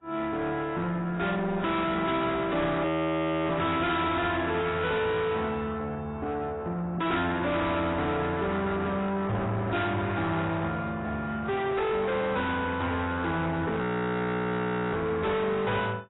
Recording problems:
lossy compression; AAC, log-spectral distance 3 dB, nothing above 3.8 kHz
distorted audio; soft clipping, signal-to-distortion ratio 7 dB
frozen audio; at 3 s for 0.5 s and at 14 s for 1 s

